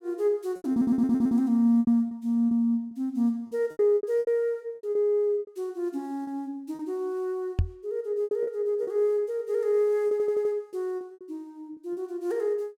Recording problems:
lost packets; 11% of the sound replaced, filled with repeated pitch periods
stutter; at 0.5 s and at 10 s
knock on the microphone; at 7.5 s; peak +5 dB vs average level

